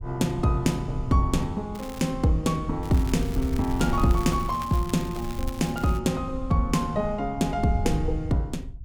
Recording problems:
rumble; below 84 Hz, SNR 9 dB
crackling; at 2 s and from 3 to 6 s; loose cable, SNR 18 dB

